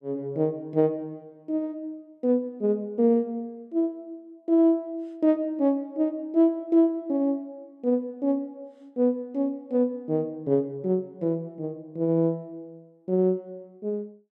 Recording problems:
none

